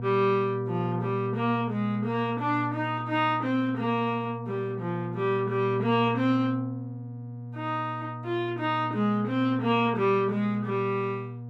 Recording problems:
electrical hum; 60 Hz, harmonics up to 720 Hz, SNR 8 dB

